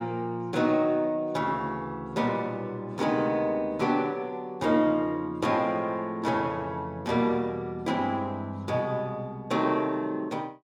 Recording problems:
none

